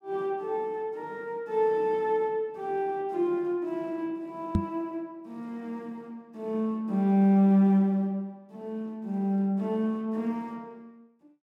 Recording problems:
knock on the microphone; at 4.5 s; peak +6 dB vs average level

